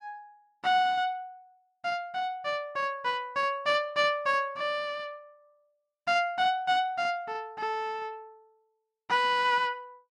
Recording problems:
none

